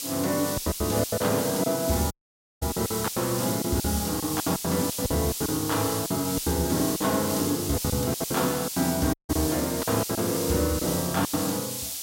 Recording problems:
background hiss; SNR 4 dB
lost packets; 14% of the sound replaced, filled with silence
audio cutting out; at 2 s for 0.5 s and at 9 s

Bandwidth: 16 kHz